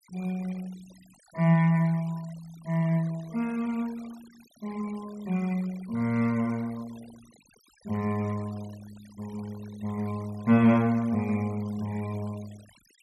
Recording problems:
denoising artefacts; signal-to-artefact ratio 23 dB

